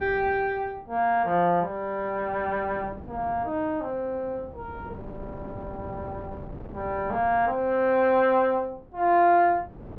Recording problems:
wind on the microphone; below 390 Hz, SNR 19 dB

